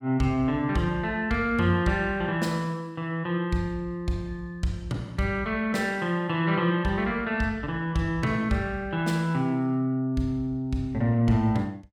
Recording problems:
none

